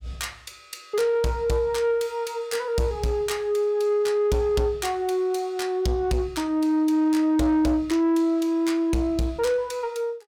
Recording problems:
distorted audio; soft clipping, signal-to-distortion ratio 12 dB

